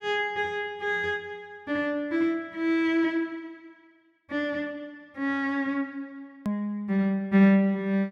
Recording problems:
hard cut with a click; at 6.5 s

